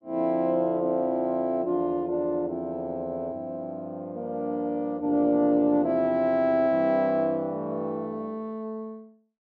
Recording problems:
none

